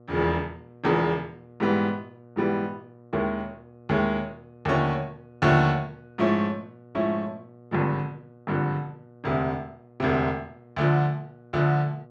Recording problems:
mains hum; 60 Hz, harmonics up to 1.3 kHz, SNR 24 dB

